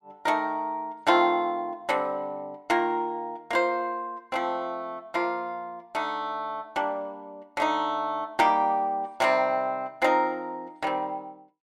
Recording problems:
none

